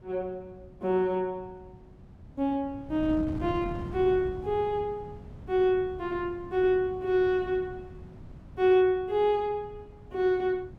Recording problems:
wind noise; below 210 Hz, SNR 16 dB

